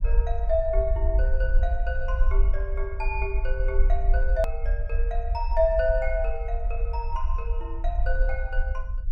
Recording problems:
rumble; below 50 Hz, SNR -2 dB
click at an edit; at 4.5 s

